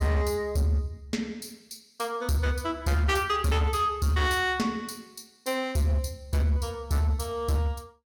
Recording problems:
distortion; hard clipping, signal-to-distortion ratio 11 dB

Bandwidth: 17.5 kHz